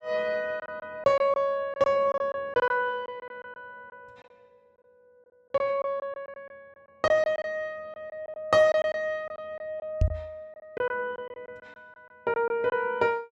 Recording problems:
lost packets; 10% of the sound replaced, filled with silence
microphone bump; at 10 s; peak +6 dB vs average level

